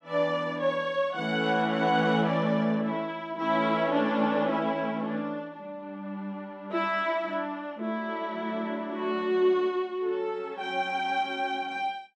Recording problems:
none

